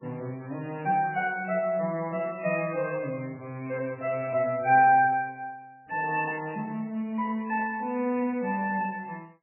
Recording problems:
codec artefacts; MP3, log-spectral distance 3 dB, nothing above 2.4 kHz

